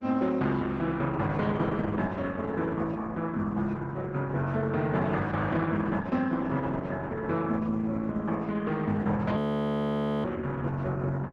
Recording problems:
lossy compression; Opus, log-spectral distance 3 dB, nothing above 13.1 kHz
frozen audio; at 9.5 s for 1 s

